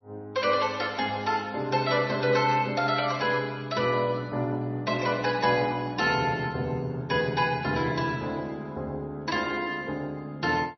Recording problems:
lossy codec; MP3, log-spectral distance 3 dB, nothing above 5.8 kHz

